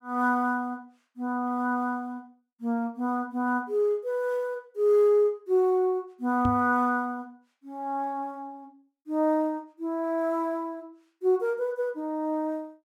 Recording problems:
microphone bump; at 6.5 s; peak 0 dB vs average level

